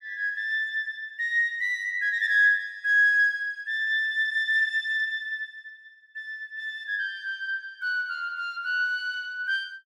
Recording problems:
none

